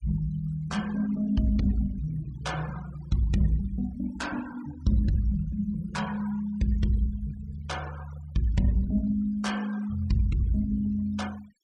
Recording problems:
noise reduction artefacts; signal-to-artefact ratio 19 dB

